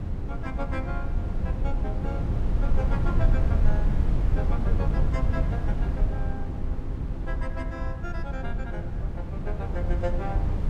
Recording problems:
wind noise; below 90 Hz, SNR -9 dB

